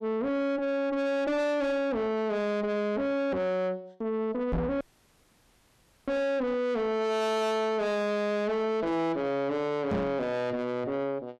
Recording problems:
distorted audio; soft clipping, signal-to-distortion ratio 6 dB
microphone thump; at 4.5 s and at 10 s; peak +5 dB vs average level
audio cutting out; at 5 s for 1.5 s

